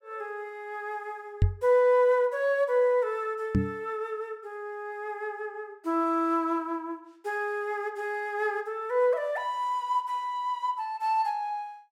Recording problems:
knock on the microphone; at 1.5 s and at 3.5 s; peak +8 dB vs average level

